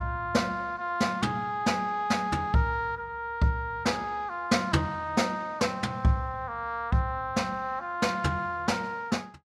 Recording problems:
none

